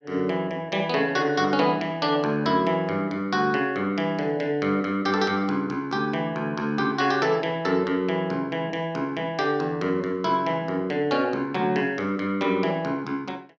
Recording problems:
none

